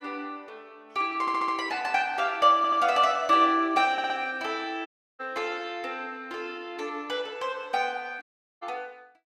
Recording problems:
audio stuttering; at 1 s, at 2.5 s and at 4 s
audio cutting out; at 5 s and at 8 s

